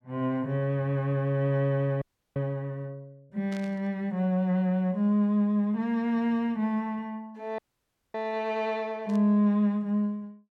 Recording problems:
frozen audio; at 2 s and at 7.5 s for 0.5 s
static burst; at 3.5 s and at 9 s; peak -14 dB vs average level

